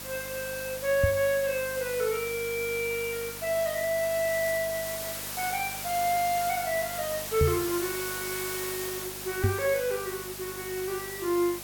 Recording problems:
electrical hum; 50 Hz, harmonics up to 800 Hz, SNR 19 dB
background hiss; slope -1 dB per octave, SNR 6 dB
knock on the microphone; at 1 s, at 7.5 s and at 9.5 s; peak +7 dB vs average level

